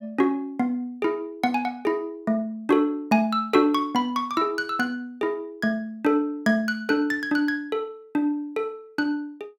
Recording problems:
none

